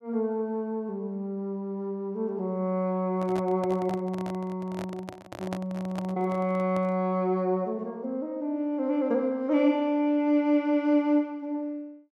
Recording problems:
handling noise; from 3 to 7 s; peak -4 dB vs average level

